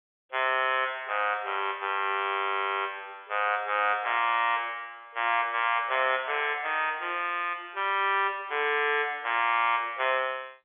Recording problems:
telephone audio; 340 Hz to 3.5 kHz, G.711

